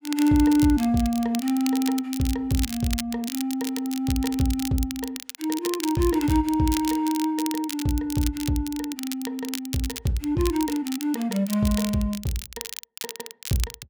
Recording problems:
crackling; vinyl, SNR 10 dB

